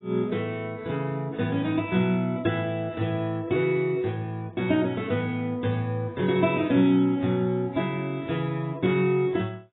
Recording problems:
lossy codec; AAC, log-spectral distance 2 dB, nothing above 3.7 kHz

